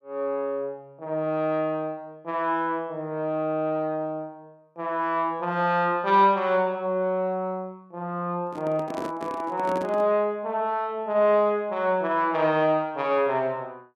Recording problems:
handling noise; from 8.5 to 10 s; peak -5 dB vs average level

